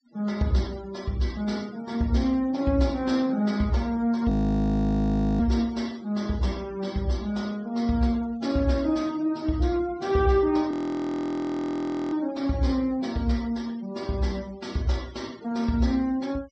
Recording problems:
low-pass filter; nothing above 8 kHz
denoising artefacts; signal-to-artefact ratio 23 dB
audio freezing; at 4.5 s for 1 s and at 11 s for 1.5 s

